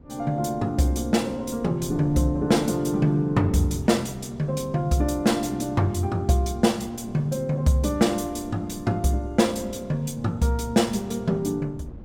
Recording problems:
wind on the microphone; below 240 Hz, SNR 21 dB

